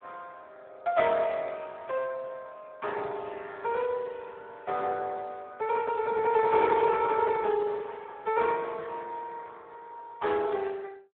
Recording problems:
phone line; 340 Hz to 2.8 kHz, Speex

